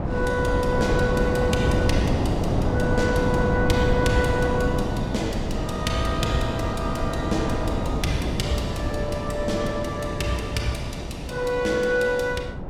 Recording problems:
wind noise; below 410 Hz, SNR 0 dB

